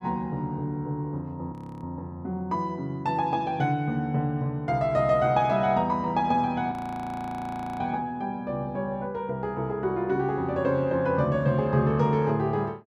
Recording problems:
frozen audio; at 1.5 s and at 6.5 s for 1 s

